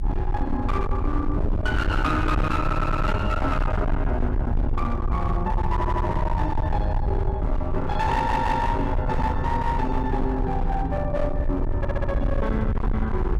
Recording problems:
distorted audio; hard clipping, signal-to-distortion ratio 8 dB
rumble; below 96 Hz, SNR 1 dB
audio stuttering; 4 times, first at 2.5 s

